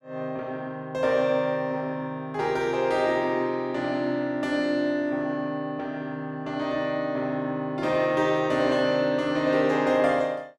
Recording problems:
none

